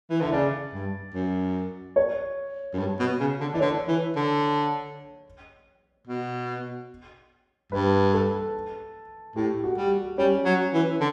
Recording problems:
none

